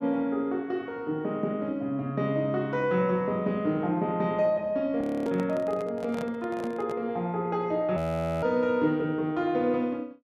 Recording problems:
frozen audio; at 5 s and at 8 s
microphone handling noise; from 5.5 to 7 s; peak -6 dB vs average level

